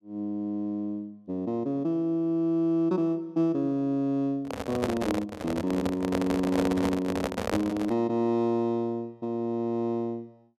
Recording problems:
handling noise; from 4.5 to 8 s; peak +3 dB vs average level

